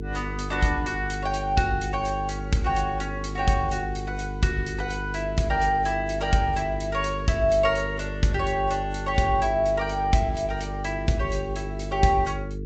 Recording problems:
low-pass filter; nothing above 7.6 kHz
lossy compression; MP3, log-spectral distance 2 dB
hum; 50 Hz, harmonics up to 450 Hz, SNR 8 dB

